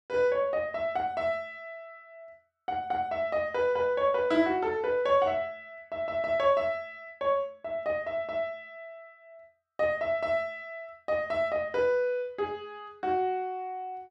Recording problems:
none

